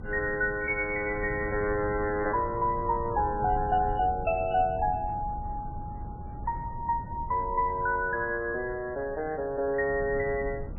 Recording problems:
lossy codec; MP3, log-spectral distance 2 dB
wind noise; below 140 Hz, SNR 12 dB

